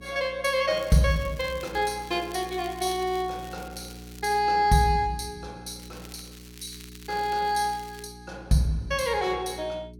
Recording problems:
electrical hum; 60 Hz, harmonics up to 420 Hz, SNR 19 dB
crackling; from 0.5 to 4.5 s and from 6 to 8 s; loose cable, SNR 21 dB

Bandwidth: 17 kHz